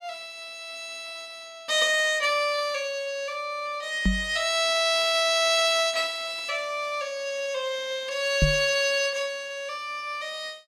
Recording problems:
microphone bump; at 4 s and at 8.5 s; peak +5 dB vs average level

